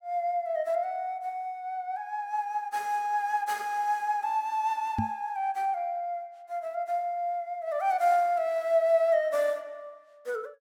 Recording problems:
microphone bump; at 5 s; peak +3 dB vs average level

